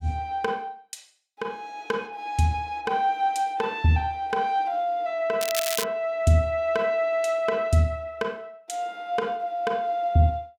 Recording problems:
crackling; at 5.5 s; loose cable, SNR 4 dB

